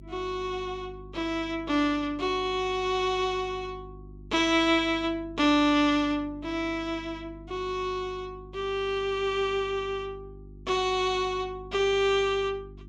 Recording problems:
hum; 50 Hz, harmonics up to 350 Hz, SNR 20 dB

